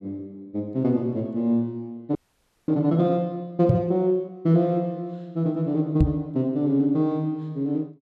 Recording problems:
frozen audio; at 2 s for 0.5 s
knock on the microphone; at 3.5 s and at 6 s; peak +8 dB vs average level

